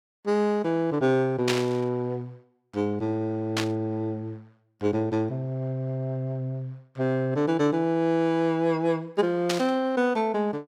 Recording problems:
static burst; at 1.5 s, at 3.5 s and at 9.5 s; peak +3 dB vs average level

